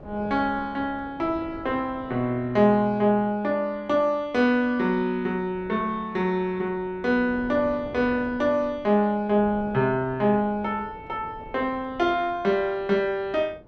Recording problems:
wind noise; below 530 Hz, SNR 20 dB

